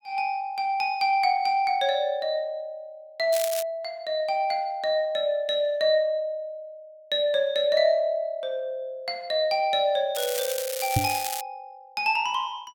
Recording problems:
crackling; at 3.5 s and from 10 to 11 s; loose cable, SNR 7 dB
microphone thump; at 11 s; peak +4 dB vs average level

